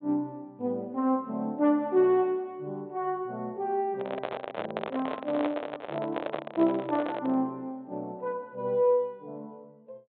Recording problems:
treble missing; nothing above 4 kHz
handling noise; from 4 to 7.5 s; peak +1 dB vs average level

